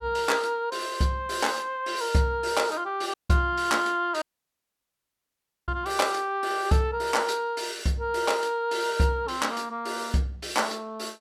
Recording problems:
audio cutting out; at 3 s and at 4 s for 1.5 s

